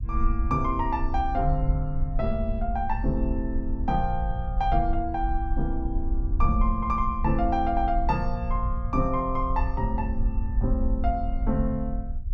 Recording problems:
low-frequency rumble; below 60 Hz, SNR 2 dB

